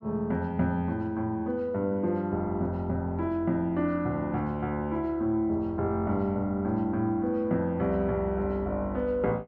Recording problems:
none

